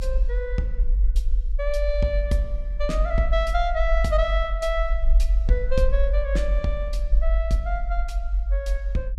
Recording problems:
rumble; below 48 Hz, SNR -2 dB

